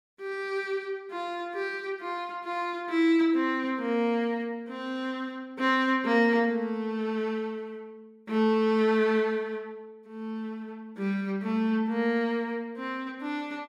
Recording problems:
none

